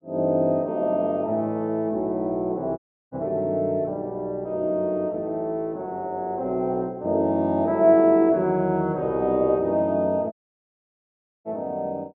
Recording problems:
audio cutting out; at 3 s and at 10 s for 1 s

